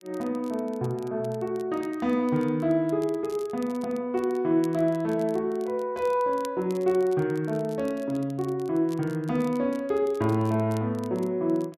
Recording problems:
crackling; vinyl, SNR 26 dB

